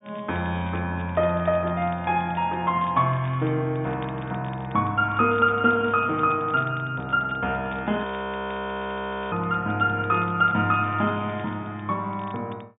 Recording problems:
treble missing; nothing above 3.7 kHz
crackling; vinyl, SNR 27 dB
frozen audio; at 8 s for 1.5 s

